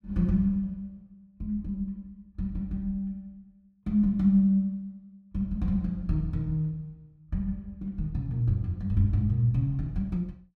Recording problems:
none

